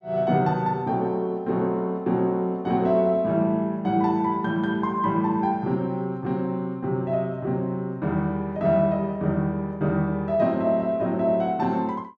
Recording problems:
none

